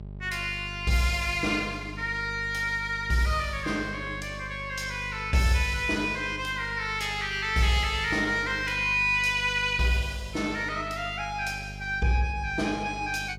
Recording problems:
electrical hum; 50 Hz, harmonics up to 600 Hz, SNR 14 dB

